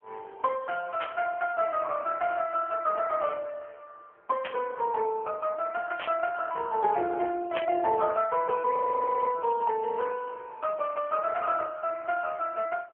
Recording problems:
phone line; 320 Hz to 2.8 kHz, AMR-NB
static burst; 4 times, first at 1 s; peak 0 dB vs average level
frozen audio; at 8.5 s for 0.5 s

